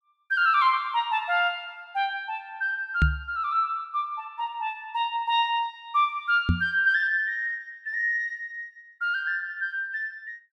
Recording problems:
microphone bump; at 3 s and at 6.5 s; peak +7 dB vs average level

